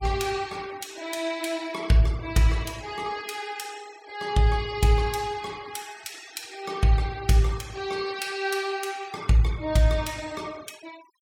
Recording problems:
noise reduction artefacts; signal-to-artefact ratio 21 dB

